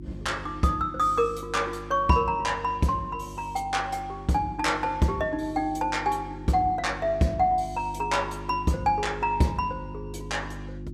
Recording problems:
hum; 50 Hz, harmonics up to 350 Hz, SNR 14 dB

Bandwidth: 14.5 kHz